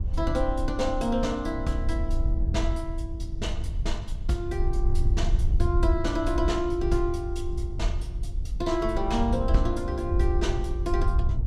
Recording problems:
wind on the microphone; below 70 Hz, SNR 0 dB

